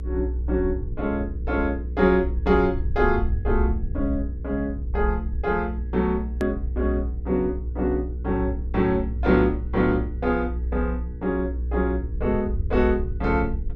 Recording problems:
electrical hum; 60 Hz, harmonics up to 480 Hz, SNR 15 dB
low-frequency rumble; below 64 Hz, strongest tone 62 Hz, SNR 5 dB
edit click; at 6.5 s

